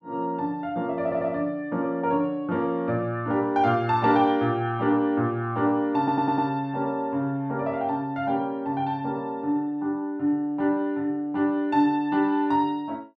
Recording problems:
audio stuttering; at 1 s and at 6 s

